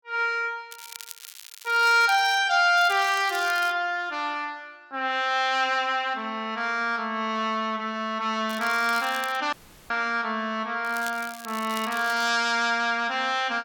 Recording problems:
crackle; 4 times, first at 0.5 s; loose cable, SNR 17 dB
dropout; at 9.5 s

